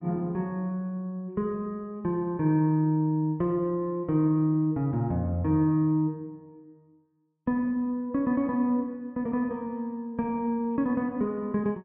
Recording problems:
none

